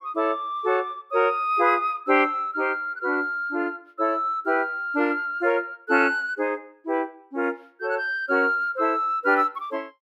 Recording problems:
none

